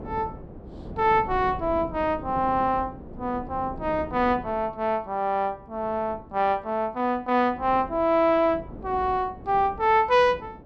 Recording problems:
wind on the microphone; below 400 Hz, SNR 16 dB

